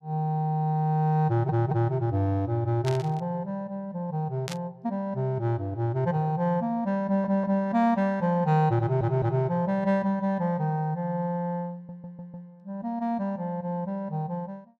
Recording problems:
audio stuttering; 4 times, first at 1.5 s
burst of static; at 3 s and at 4.5 s; peak -5 dB vs average level

